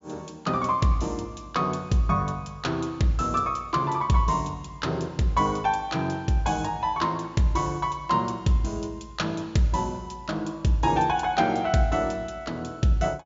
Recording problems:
treble cut off; nothing above 7.2 kHz

